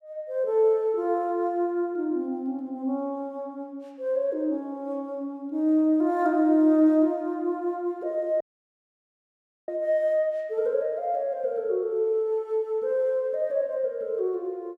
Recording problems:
dropout; at 8.5 s for 1.5 s

